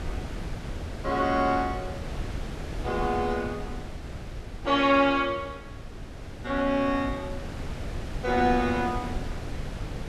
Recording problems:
wind on the microphone; below 300 Hz, SNR 11 dB

